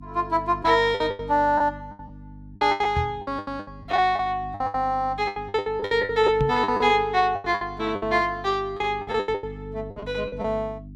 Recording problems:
hum; 50 Hz, harmonics up to 300 Hz, SNR 18 dB
lost packets; 17% of the sound replaced, filled with the last packet
microphone bump; at 3 s and at 6.5 s; peak +1 dB vs average level

